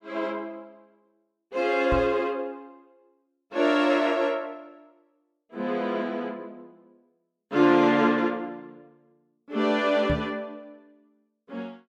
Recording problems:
microphone bump; at 2 s and at 10 s; peak -1 dB vs average level

